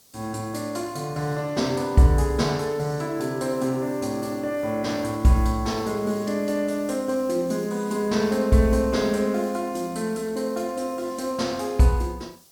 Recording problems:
hiss; SNR 25 dB

